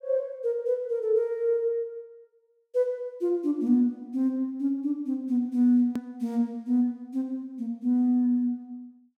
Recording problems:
hard cut with a click; at 6 s

